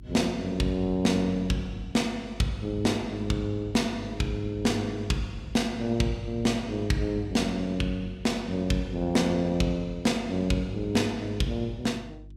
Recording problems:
hum; 50 Hz, harmonics up to 350 Hz, SNR 18 dB

